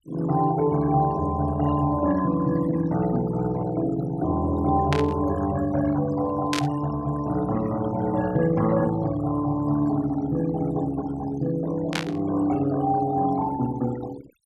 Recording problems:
noise reduction artefacts; signal-to-artefact ratio 17 dB
static burst; at 5 s, at 6.5 s and at 12 s; peak +1 dB vs average level

